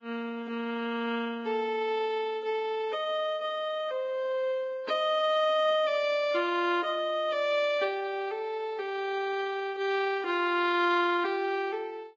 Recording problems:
lossy compression; Vorbis, log-spectral distance 2 dB

